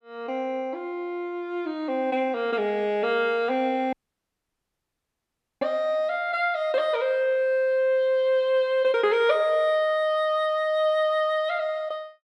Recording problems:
audio cutting out; at 4 s for 1.5 s

